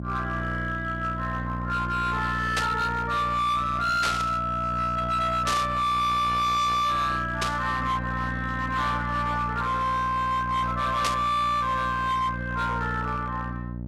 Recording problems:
distorted audio; hard clipping, signal-to-distortion ratio 10 dB
electrical hum; 60 Hz, harmonics up to 2.3 kHz, SNR 8 dB
static burst; 5 times, first at 2.5 s; peak +2 dB vs average level

